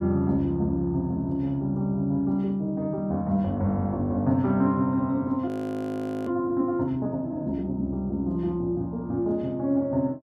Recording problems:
audio freezing; at 5.5 s for 1 s

